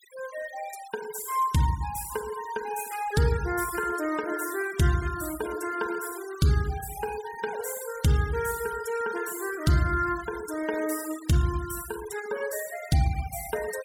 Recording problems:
denoising artefacts; signal-to-artefact ratio 15 dB

